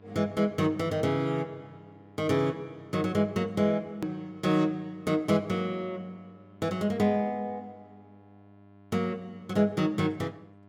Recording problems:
hum; 50 Hz, harmonics up to 1.8 kHz, SNR 25 dB
hard cut with a click; at 4 s

